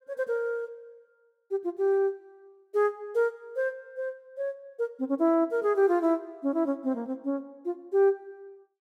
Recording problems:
none

